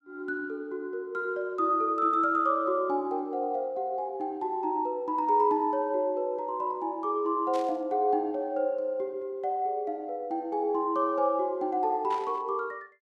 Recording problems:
burst of static; at 7.5 s and at 12 s; peak -11 dB vs average level

